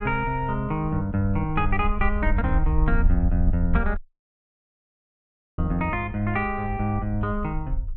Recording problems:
rumble; below 62 Hz, SNR 4 dB
audio cutting out; at 4 s for 1.5 s

